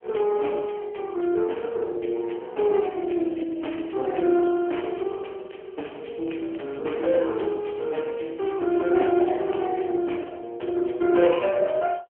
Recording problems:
telephone audio; 280 Hz to 3.2 kHz, AMR-NB
crackling; from 2.5 to 5.5 s and from 6 to 10 s; loose cable, SNR 28 dB

